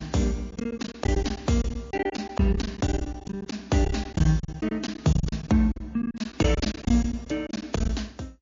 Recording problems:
lossy codec; MP2, then MP3, log-spectral distance 4 dB, nothing above 6 kHz
lost packets; 15% of the sound replaced, filled with silence

